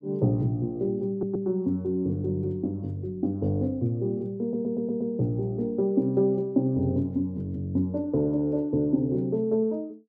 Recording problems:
audio stuttering; at 1 s and at 4.5 s

